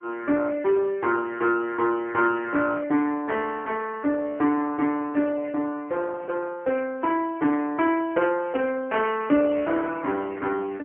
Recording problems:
telephone audio; 240 Hz to 3.2 kHz, AMR-NB, then MP3

